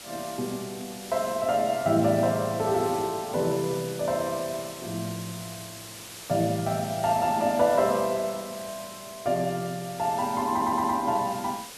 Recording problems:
hiss; slope -1 dB per octave, SNR 13 dB
audio stuttering; at 11 s

